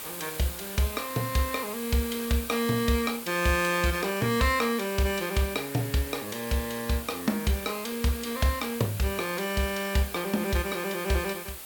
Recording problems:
hiss; slope -1 dB per octave, SNR 10 dB

